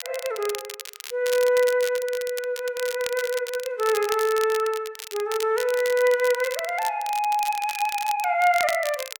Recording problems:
crackle; vinyl, SNR 11 dB

